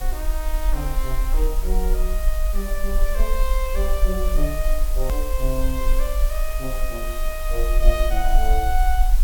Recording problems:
background hiss; slope -2 dB per octave, SNR 8 dB
low-frequency rumble; below 42 Hz, strongest tone 24 Hz, SNR -4 dB
hard cut with a click; at 5 s

